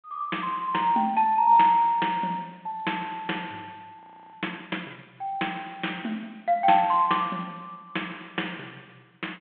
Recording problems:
phone line; 240 Hz to 3.6 kHz, G.726
audio freezing; at 4 s

